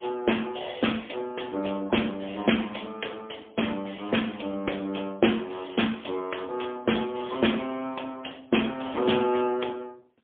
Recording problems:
phone line; 240 Hz to 3.4 kHz, AMR-NB, then MP3

